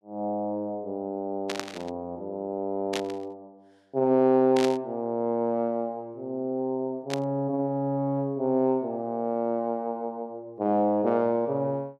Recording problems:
static burst; 4 times, first at 1.5 s; peak 0 dB vs average level

